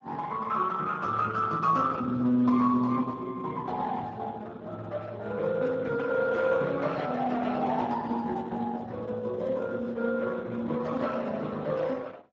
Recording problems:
codec artefacts; Opus, then Speex, log-spectral distance 3 dB

